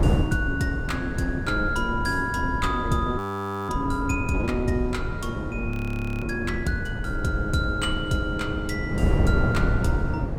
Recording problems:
wind on the microphone; below 210 Hz, SNR 2 dB
frozen audio; at 3 s for 0.5 s and at 5.5 s for 0.5 s

